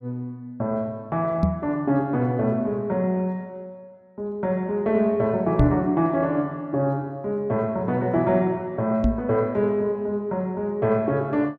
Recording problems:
knock on the microphone; at 1.5 s, at 5.5 s and at 9 s; peak +8 dB vs average level

